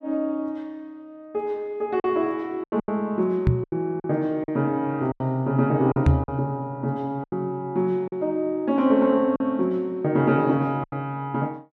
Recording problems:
packet loss; 7% of the sound replaced, filled with silence
microphone bump; at 3.5 s and at 6 s; peak +8 dB vs average level

